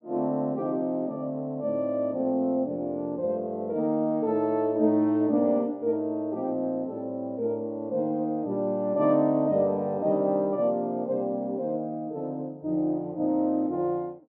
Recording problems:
none

